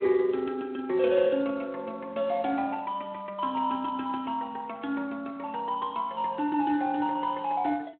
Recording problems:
telephone audio; 280 Hz to 3.7 kHz, Speex

